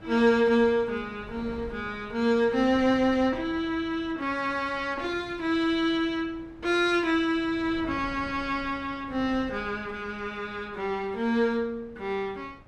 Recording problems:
wind noise; below 410 Hz, SNR 20 dB

